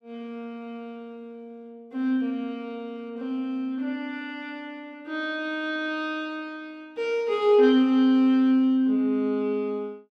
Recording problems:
none

